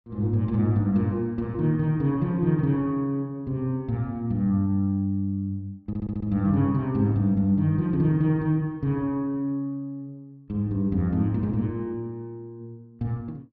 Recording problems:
stutter; at 6 s

